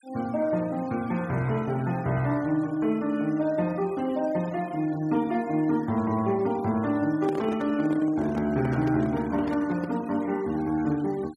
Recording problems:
denoising artefacts; signal-to-artefact ratio 22 dB
handling noise; from 7 to 10 s; peak -4 dB vs average level

